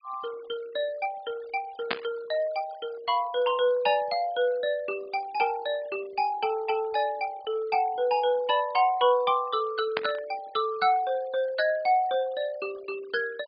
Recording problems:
treble cut off; nothing above 4.9 kHz
noise reduction artefacts; signal-to-artefact ratio 22 dB
static burst; at 2 s and at 10 s; peak +3 dB vs average level

